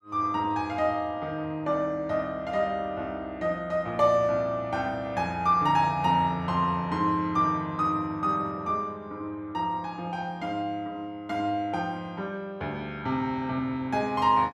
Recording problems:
none

